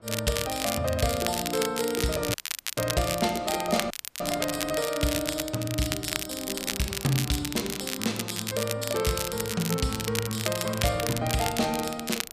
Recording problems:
wind on the microphone; below 890 Hz, SNR 21 dB
crackle; vinyl, SNR 3 dB
dropout; at 2.5 s and at 4 s

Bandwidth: 14.5 kHz